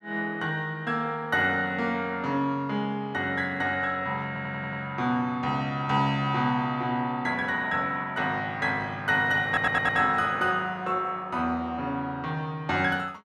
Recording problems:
audio stuttering; at 4.5 s and at 9.5 s

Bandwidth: 13 kHz